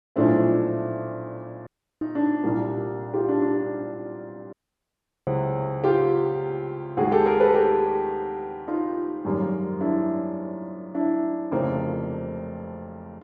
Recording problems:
dropout; at 1.5 s and at 4.5 s for 0.5 s

